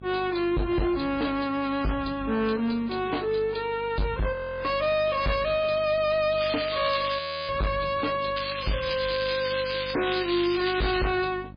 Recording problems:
codec artefacts; MP3, log-spectral distance 8 dB, nothing above 5 kHz
distorted audio; soft clipping, signal-to-distortion ratio 6 dB
mains hum; 50 Hz, harmonics up to 650 Hz, SNR 19 dB
audio freezing; at 4.5 s and at 7 s
crackle; at 6.5 s and from 8.5 to 11 s; loose cable, SNR 6 dB

